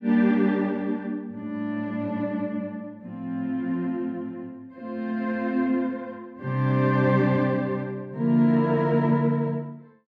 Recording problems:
none

